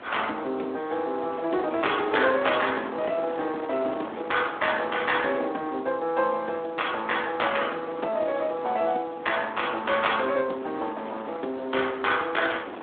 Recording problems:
phone line; 240 Hz to 3.6 kHz, Speex
wind noise; below 1.2 kHz, SNR 13 dB

